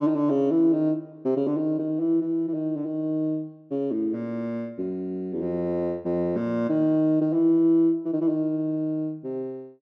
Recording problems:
none

